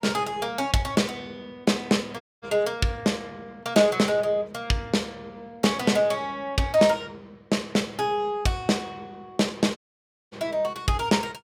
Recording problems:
dropout; at 2 s and at 10 s for 0.5 s

